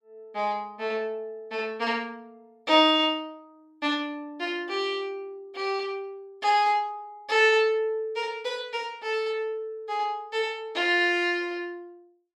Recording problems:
none

